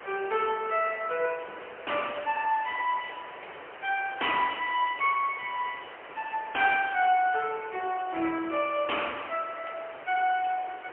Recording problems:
telephone audio; 340 Hz to 3.1 kHz, AMR-NB, then MP3
hiss; SNR 15 dB

